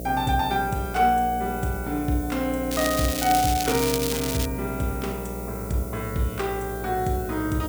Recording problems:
mains hum; 60 Hz, harmonics up to 720 Hz, SNR 9 dB
hiss; SNR 14 dB
crackle; from 2.5 to 4.5 s; loose cable, SNR 3 dB

